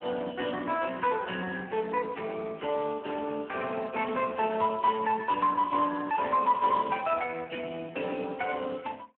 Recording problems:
phone line; 300 Hz to 2.8 kHz, Speex

